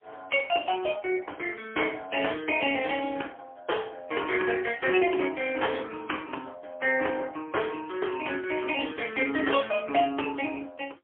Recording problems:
phone line; 260 Hz to 3.3 kHz, AMR-NB, then MP3

